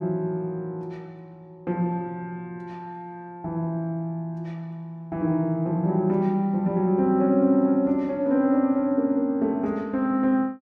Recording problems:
none

